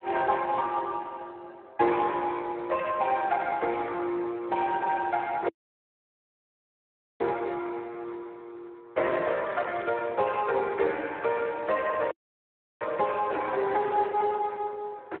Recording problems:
phone line; 300 Hz to 3.2 kHz, Speex
dropout; at 5.5 s for 1.5 s and at 12 s for 0.5 s

